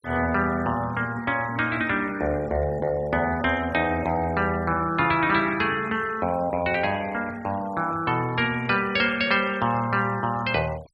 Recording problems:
noise reduction artefacts; signal-to-artefact ratio 21 dB

